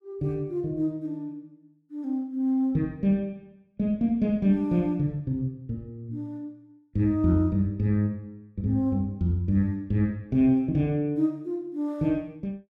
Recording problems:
none

